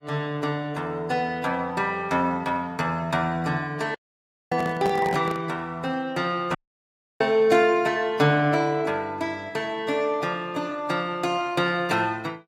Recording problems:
codec artefacts; AAC, log-spectral distance 2 dB, nothing above 14.3 kHz
microphone handling noise; from 4 to 5.5 s; peak -1 dB vs average level
audio cutting out; at 4 s for 0.5 s and at 6.5 s for 0.5 s

